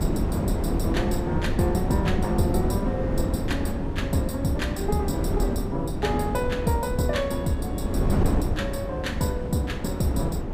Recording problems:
wind on the microphone; below 290 Hz, SNR -1 dB

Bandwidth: 15.5 kHz